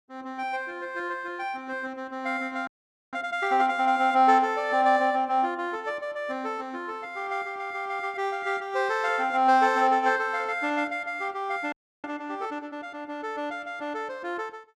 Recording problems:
audio freezing; at 2.5 s and at 12 s

